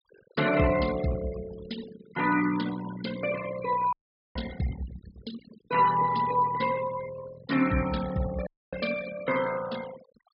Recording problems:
treble cut off; nothing above 5.5 kHz
denoising artefacts; signal-to-artefact ratio 13 dB
audio cutting out; at 4 s and at 8.5 s

